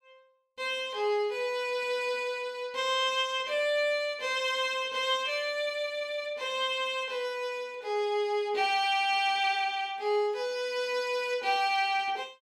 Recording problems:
none

